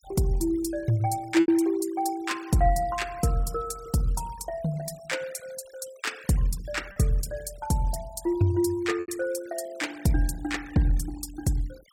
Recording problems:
noise reduction artefacts; signal-to-artefact ratio 21 dB
lost packets; 1.7% of the sound replaced, filled with repeated pitch periods

